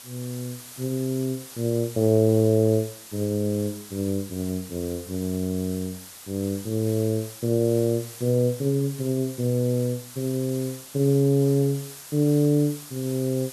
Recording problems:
background hiss; slope 0 dB per octave, SNR 15 dB

